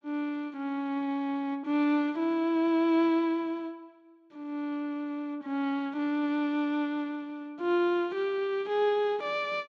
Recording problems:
none

